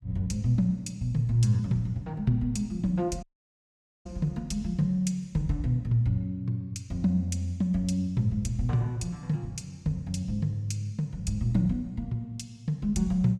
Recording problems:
dropout; at 3 s for 1 s

